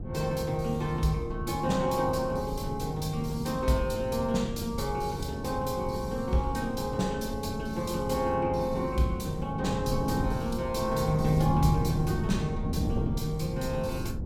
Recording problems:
wind noise; below 210 Hz, SNR 5 dB

